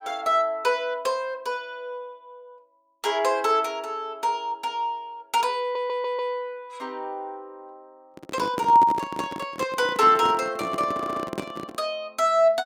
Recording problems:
audio stuttering; at 5.5 s and at 11 s
microphone handling noise; from 8 to 12 s; peak -1 dB vs average level

